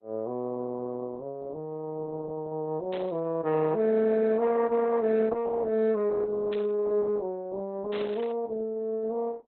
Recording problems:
lossy compression; Opus, log-spectral distance 2 dB, nothing above 4 kHz
burst of static; at 3 s, at 6.5 s and at 8 s; peak -8 dB vs average level

